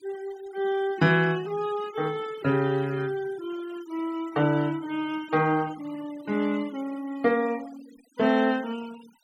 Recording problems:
denoising artefacts; signal-to-artefact ratio 20 dB

